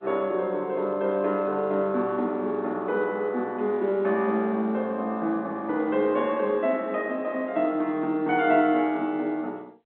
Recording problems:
telephone audio; 190 Hz to 3.7 kHz, G.711

